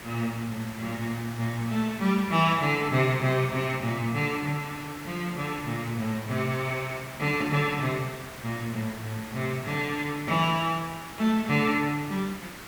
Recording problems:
background hiss; SNR 13 dB

